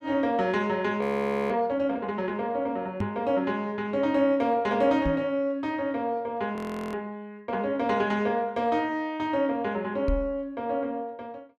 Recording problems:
frozen audio; at 1 s and at 6.5 s
microphone thump; at 3 s, at 5 s and at 10 s; peak +2 dB vs average level

